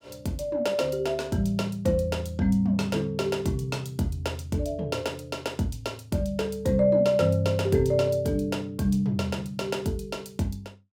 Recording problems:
none

